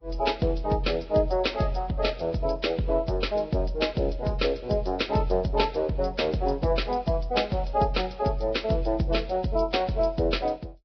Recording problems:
lossy codec; Vorbis, log-spectral distance 4 dB, nothing above 5.3 kHz

